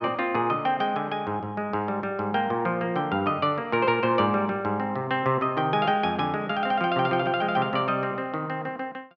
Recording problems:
none

